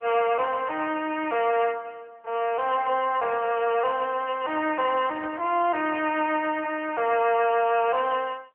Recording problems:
telephone audio; 370 Hz to 3.1 kHz, AMR-NB

